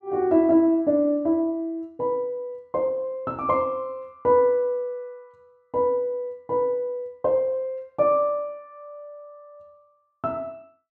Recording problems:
none

